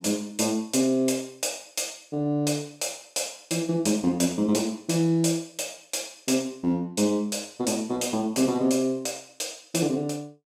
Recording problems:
none

